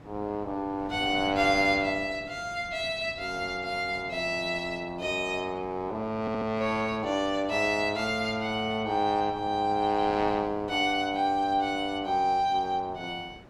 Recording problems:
wind noise; below 640 Hz, SNR 19 dB
stutter; at 6 s

